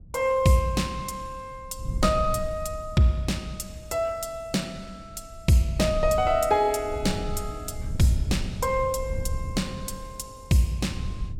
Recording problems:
wind noise; below 88 Hz, SNR 10 dB

